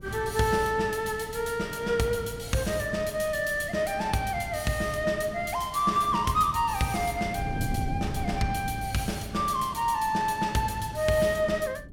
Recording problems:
wind on the microphone; below 210 Hz, SNR 13 dB

